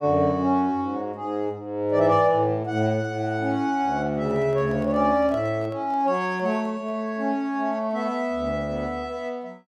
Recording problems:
handling noise; from 4 to 7 s; peak -12 dB vs average level

